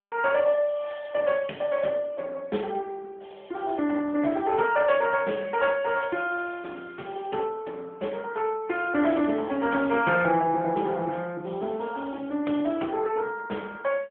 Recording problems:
telephone audio; 220 Hz to 3.4 kHz, AMR-NB

